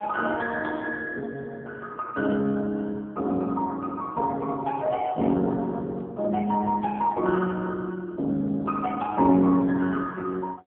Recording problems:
telephone audio; 190 Hz to 3.3 kHz, AMR-NB

